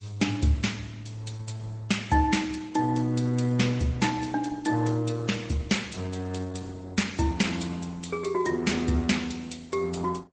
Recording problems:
codec artefacts; MP3, then Opus, log-spectral distance 4 dB, nothing above 8.2 kHz

